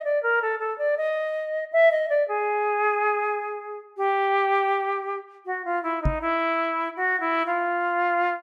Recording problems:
microphone thump; at 6 s; peak +3 dB vs average level

